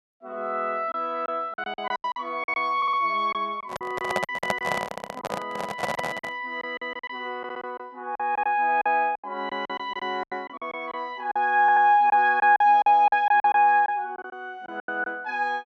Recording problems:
lost packets; 12% of the sound replaced, filled with silence
stutter; 4 times, first at 3 s
handling noise; from 3.5 to 6.5 s; peak +3 dB vs average level

